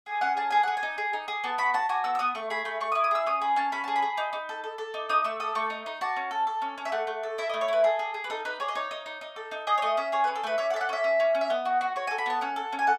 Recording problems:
none

